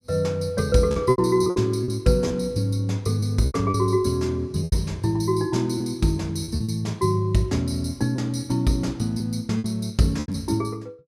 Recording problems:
lost packets; 8% of the sound replaced, filled with repeated pitch periods

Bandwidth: 15.5 kHz